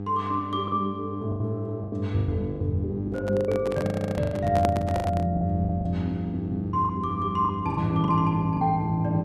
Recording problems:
hum; 50 Hz, harmonics up to 800 Hz, SNR 9 dB
lost packets; 12% of the sound replaced, filled with the last packet
microphone handling noise; from 3 to 5.5 s; peak +2 dB vs average level
stutter; at 4 s

